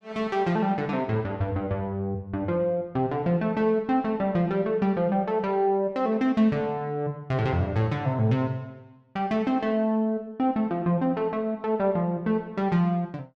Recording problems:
none

